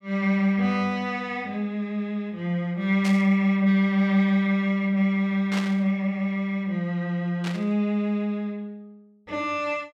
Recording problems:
burst of static; at 3 s, at 5.5 s and at 7.5 s; peak -4 dB vs average level

